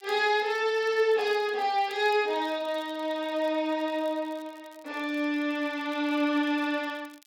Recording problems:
crackle; vinyl, SNR 29 dB

